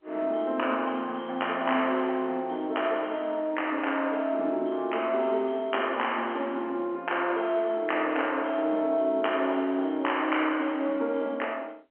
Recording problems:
phone line; 240 Hz to 3.1 kHz, G.711

